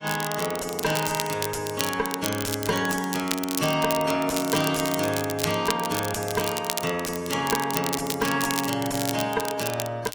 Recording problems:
codec artefacts; AAC, log-spectral distance 3 dB
distortion; soft clipping, signal-to-distortion ratio 11 dB
crackle; vinyl, SNR 6 dB

